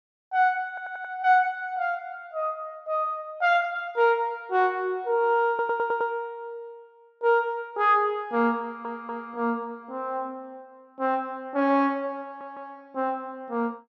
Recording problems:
audio stuttering; 4 times, first at 0.5 s

